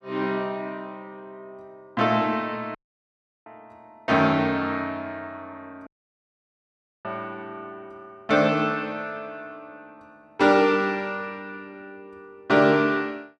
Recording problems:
dropout; at 3 s for 0.5 s and at 6 s for 1 s

